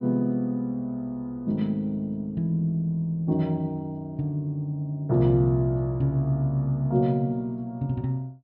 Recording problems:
treble cut off; nothing above 5.5 kHz

